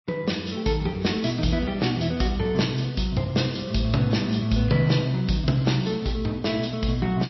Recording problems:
lossy compression; MP3, log-spectral distance 5 dB, nothing above 5.7 kHz

